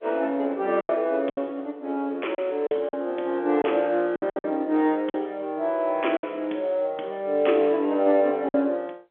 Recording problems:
phone line; 240 Hz to 3.9 kHz, G.711
packet loss; 7% of the sound replaced, filled with silence

